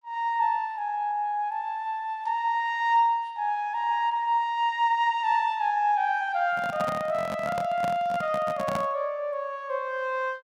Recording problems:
microphone handling noise; from 6.5 to 9 s; peak -1 dB vs average level

